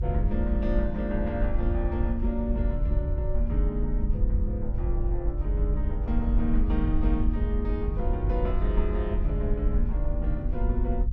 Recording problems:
rumble; below 60 Hz, SNR -3 dB

